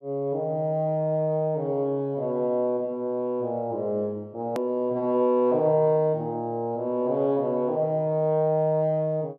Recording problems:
click at an edit; at 4.5 s

